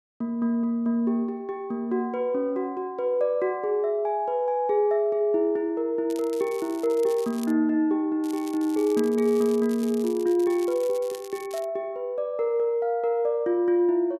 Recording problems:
crackling; from 6 to 7.5 s and from 8 to 12 s; loose cable, SNR 20 dB

